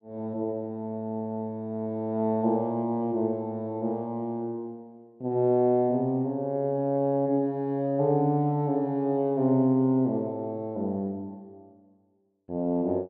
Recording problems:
none

